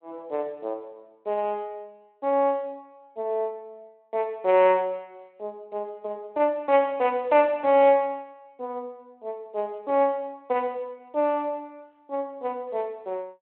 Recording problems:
phone line; 260 Hz to 3.2 kHz, Speex

